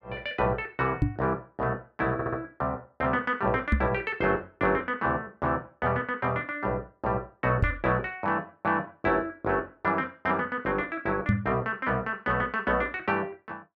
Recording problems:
microphone thump; 4 times, first at 1 s; peak +8 dB vs average level
stutter; at 2 s

